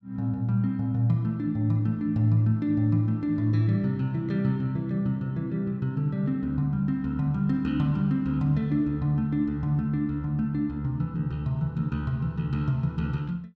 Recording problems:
none

